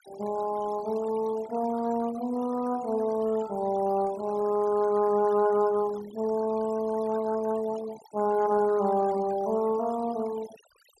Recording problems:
denoising artefacts; signal-to-artefact ratio 19 dB

